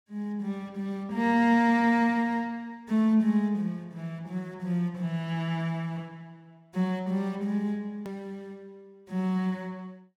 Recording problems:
hard cut with a click; at 8 s

